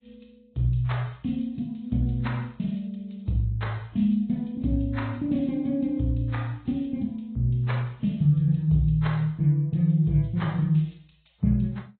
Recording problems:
treble missing; nothing above 4 kHz
lossy codec; MP3, then AAC, log-spectral distance 2 dB

